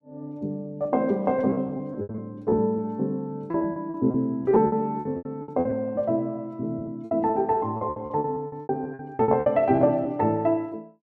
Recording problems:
lost packets; 15% of the sound replaced, filled with repeated pitch periods

